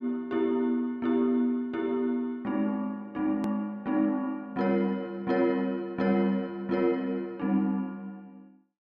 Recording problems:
hard cut with a click; at 3.5 s

